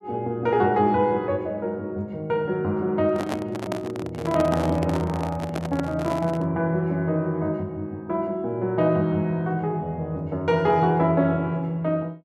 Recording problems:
handling noise; from 3 to 6.5 s; peak 0 dB vs average level

